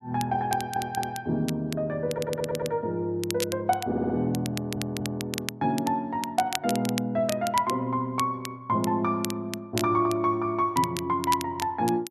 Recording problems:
crackle; vinyl, SNR 11 dB
audio stuttering; 4 times, first at 0.5 s

